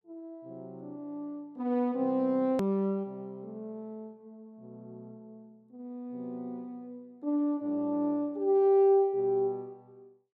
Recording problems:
click at an edit; at 2.5 s

